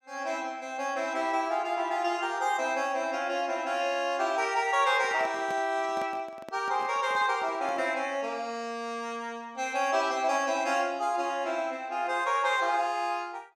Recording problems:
handling noise; from 5 to 8 s; peak -9 dB vs average level

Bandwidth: 15.5 kHz